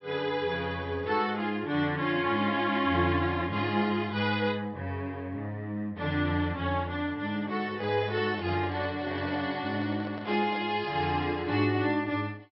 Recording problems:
low-pass filter; nothing above 5.6 kHz
handling noise; from 7.5 to 11 s; peak -9 dB vs average level

